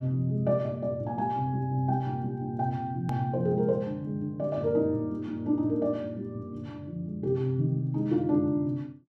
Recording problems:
hard cut with a click; at 3 s

